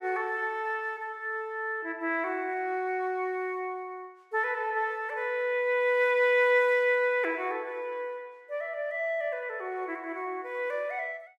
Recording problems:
none

